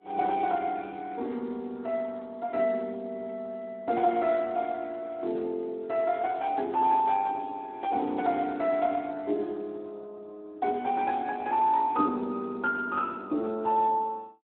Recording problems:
phone line; 220 Hz to 3 kHz, Speex

